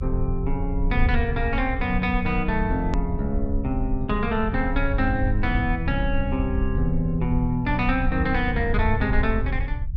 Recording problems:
treble missing; nothing above 7.8 kHz
low-frequency rumble; below 76 Hz, SNR 3 dB
hard cut with a click; at 3 s

